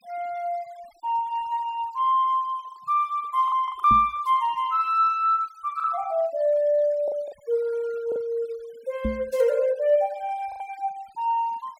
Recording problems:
denoising artefacts; signal-to-artefact ratio 28 dB
lost packets; 4% of the sound replaced, filled with the last packet
microphone thump; at 4 s and at 9 s; peak 0 dB vs average level

